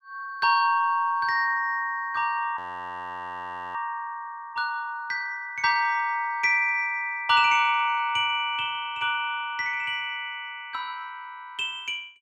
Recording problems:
frozen audio; at 2.5 s for 1 s

